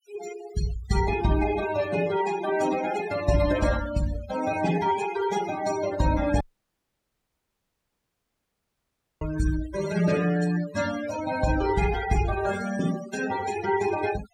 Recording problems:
denoising artefacts; signal-to-artefact ratio 11 dB
audio cutting out; at 6.5 s for 3 s

